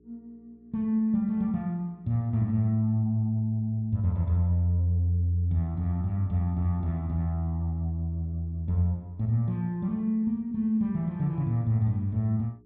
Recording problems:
electrical hum; 60 Hz, harmonics up to 420 Hz, SNR 32 dB

